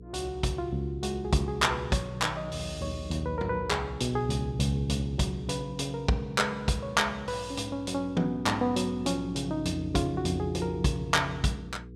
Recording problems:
mains hum; 60 Hz, harmonics up to 480 Hz, SNR 14 dB

